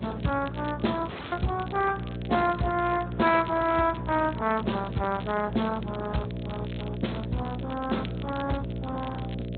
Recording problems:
low-pass filter; nothing above 4 kHz
lossy codec; Speex, log-spectral distance 4 dB
electrical hum; 60 Hz, harmonics up to 660 Hz, SNR 7 dB
crackling; vinyl, SNR 20 dB
audio cutting out; at 1 s

